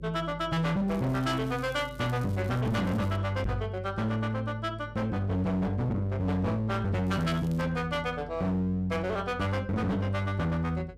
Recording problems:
distortion; hard clipping, signal-to-distortion ratio 8 dB
hum; 50 Hz, harmonics up to 550 Hz, SNR 19 dB
crackling; from 1 to 3 s and at 7 s; loose cable, SNR 25 dB
microphone thump; at 3.5 s; peak +1 dB vs average level

